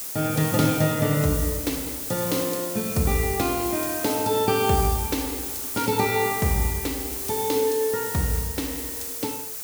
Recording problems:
hiss; SNR 4 dB

